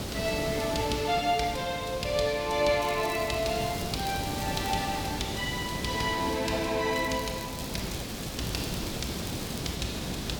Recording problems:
hiss; SNR 5 dB
crackling; from 3 to 4.5 s and from 7 to 10 s; loose cable, SNR 14 dB

